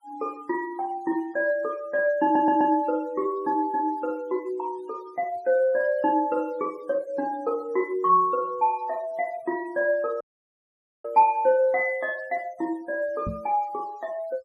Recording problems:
noise reduction artefacts; signal-to-artefact ratio 27 dB
stutter; at 2 s
dropout; at 10 s for 1 s
knock on the microphone; at 13 s; peak -3 dB vs average level

